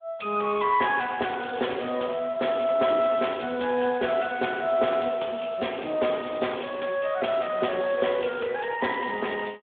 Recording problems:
phone line; 320 Hz to 3.5 kHz, Speex

